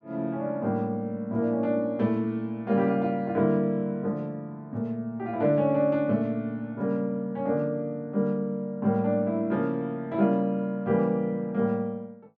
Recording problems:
none

